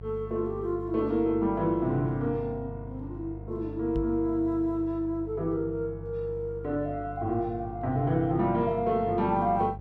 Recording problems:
hum; 50 Hz, harmonics up to 700 Hz, SNR 13 dB
microphone thump; at 4 s; peak -1 dB vs average level

